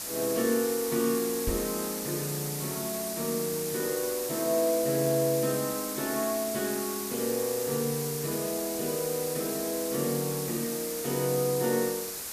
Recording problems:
background hiss; SNR 4 dB
knock on the microphone; at 1.5 s; peak 0 dB vs average level

